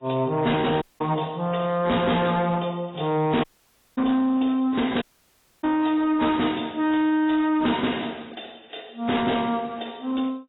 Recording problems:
lossy codec; AAC, then AAC, log-spectral distance 6 dB, nothing above 3.8 kHz
distorted audio; soft clipping, signal-to-distortion ratio 11 dB
dropout; at 1 s, at 3.5 s for 0.5 s and at 5 s for 0.5 s

